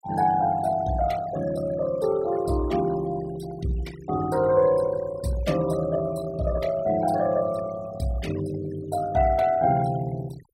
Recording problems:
noise reduction artefacts; signal-to-artefact ratio 18 dB

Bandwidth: 16 kHz